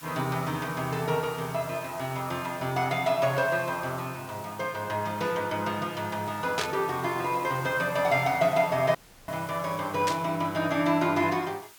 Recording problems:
background hiss; SNR 18 dB
static burst; at 6.5 s and at 10 s; peak +2 dB vs average level
dropout; at 9 s

